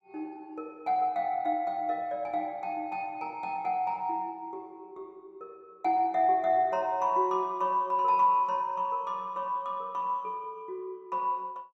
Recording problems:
none

